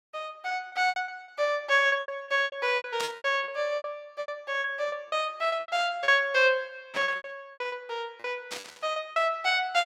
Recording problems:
packet loss; 16% of the sound replaced, filled with repeated pitch periods
static burst; at 3 s, at 7 s and at 8.5 s; peak -3 dB vs average level

